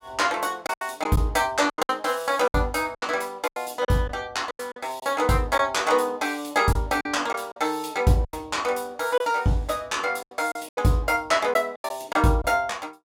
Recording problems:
lost packets; 9% of the sound replaced, filled with silence

